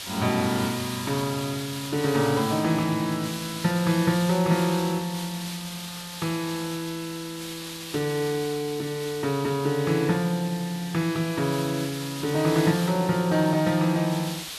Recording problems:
hiss; SNR 10 dB

